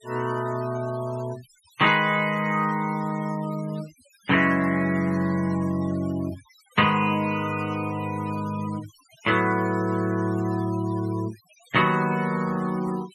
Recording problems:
denoising artefacts; signal-to-artefact ratio 20 dB

